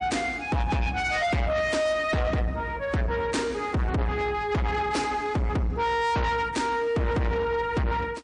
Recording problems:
codec artefacts; MP3, log-spectral distance 2 dB, nothing above 9 kHz
distorted audio; soft clipping, signal-to-distortion ratio 7 dB

